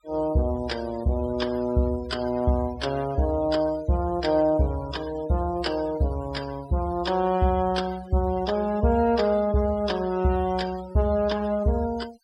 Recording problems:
noise reduction artefacts; signal-to-artefact ratio 18 dB

